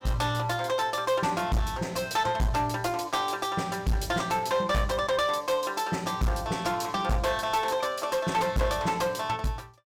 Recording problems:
distortion; hard clipping, uneven, signal-to-distortion ratio 10 dB

